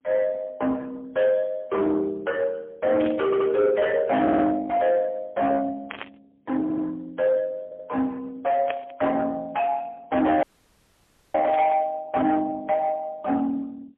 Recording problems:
phone line; 220 Hz to 3.3 kHz, AMR-NB, then MP3
distorted audio; soft clipping, signal-to-distortion ratio 12 dB
burst of static; 4 times, first at 3 s; peak -5 dB vs average level
audio stuttering; 4 times, first at 3.5 s
audio cutting out; at 10 s for 1 s

